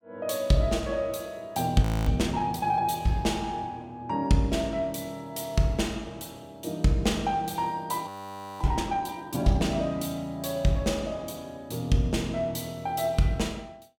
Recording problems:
audio freezing; at 2 s and at 8 s for 0.5 s

